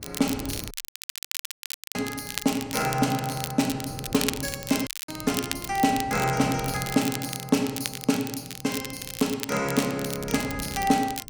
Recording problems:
wind noise; below 320 Hz, SNR 17 dB
crackle; vinyl, SNR 7 dB
audio cutting out; at 0.5 s for 1 s and at 5 s

